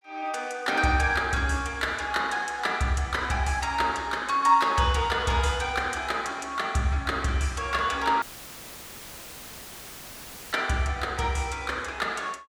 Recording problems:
dropout; at 8 s for 2.5 s; filled with static

